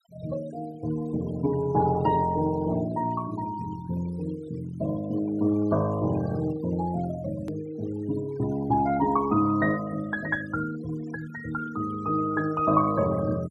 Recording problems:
denoising artefacts; signal-to-artefact ratio 18 dB
hard cut with a click; at 7.5 s

